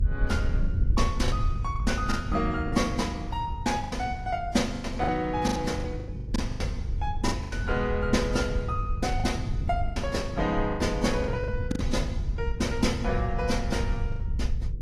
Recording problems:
lossy compression; AAC, log-spectral distance 2 dB
electrical hum; 50 Hz, harmonics up to 500 Hz, SNR 25 dB
rumble; below 78 Hz, SNR 6 dB
wind on the microphone; below 110 Hz, SNR 6 dB
packet loss; 9% of the sound replaced, filled with the last packet

